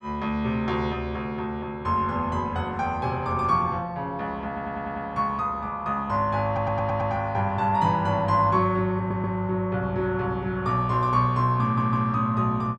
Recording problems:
audio stuttering; 4 times, first at 4.5 s

